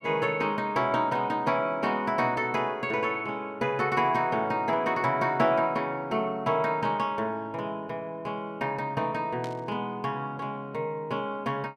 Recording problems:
static burst; at 9.5 s; peak -11 dB vs average level

